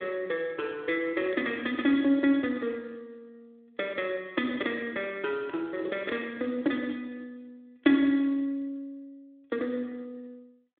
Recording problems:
telephone audio; 300 Hz to 3.5 kHz, Speex

